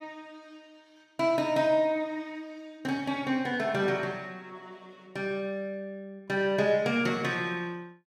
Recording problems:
none

